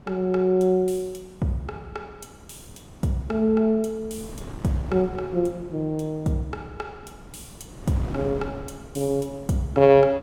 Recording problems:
wind on the microphone; below 410 Hz, SNR 18 dB

